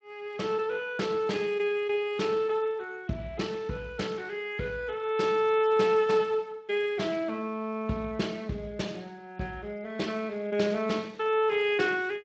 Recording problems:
lossy compression; Speex, log-spectral distance 3 dB

